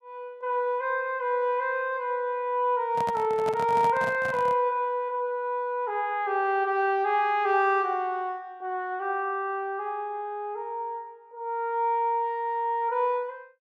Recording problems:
microphone handling noise; from 3 to 4.5 s; peak -4 dB vs average level

